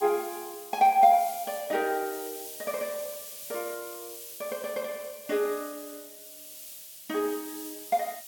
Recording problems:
lossy compression; MP2, log-spectral distance 2 dB
hiss; SNR 12 dB

